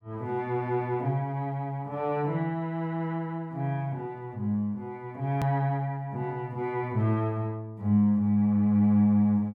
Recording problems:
hard cut with a click; at 5.5 s

